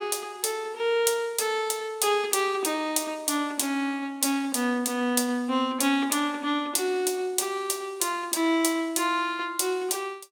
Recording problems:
none

